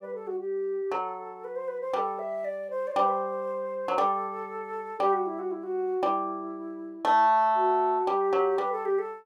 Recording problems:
none

